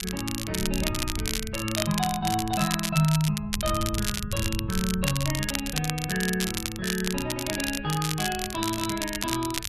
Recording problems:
wind noise; below 110 Hz, SNR 10 dB
crackle; vinyl, SNR 3 dB

